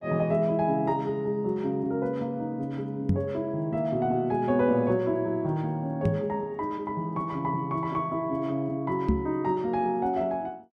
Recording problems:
microphone thump; at 3 s, at 6 s and at 9 s; peak +6 dB vs average level

